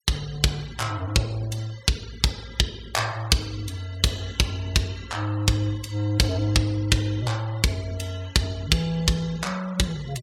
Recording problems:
denoising artefacts; signal-to-artefact ratio 21 dB

